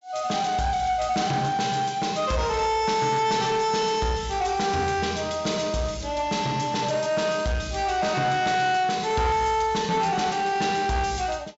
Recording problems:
treble missing; nothing above 8 kHz
distorted audio; soft clipping, signal-to-distortion ratio 11 dB

